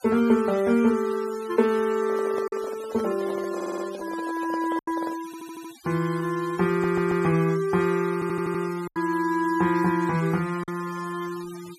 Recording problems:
denoising artefacts; signal-to-artefact ratio 19 dB
packet loss; 2% of the sound replaced, filled with silence
handling noise; from 2 to 5 s; peak -7 dB vs average level
stutter; 4 times, first at 3.5 s

